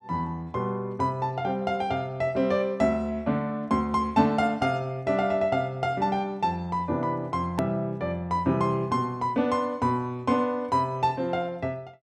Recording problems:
click at an edit; at 7.5 s

